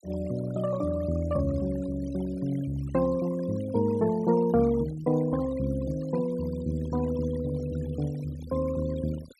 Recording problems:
denoising artefacts; signal-to-artefact ratio 18 dB

